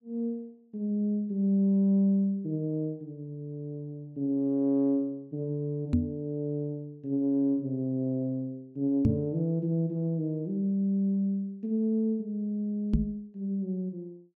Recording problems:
microphone bump; at 6 s, at 9 s and at 13 s; peak +8 dB vs average level

